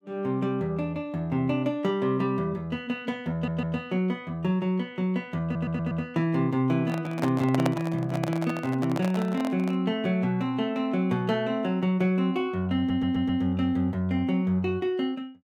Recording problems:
audio stuttering; at 3.5 s, at 5.5 s and at 13 s
microphone handling noise; from 7 to 10 s; peak +3 dB vs average level

